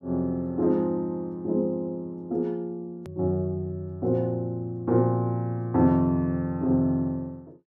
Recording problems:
hard cut with a click; at 3 s

